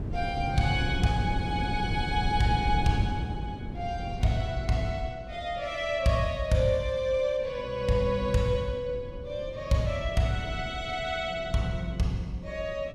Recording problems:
wind noise; below 200 Hz, SNR 7 dB

